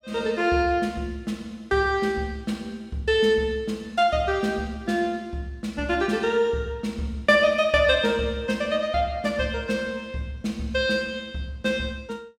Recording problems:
none

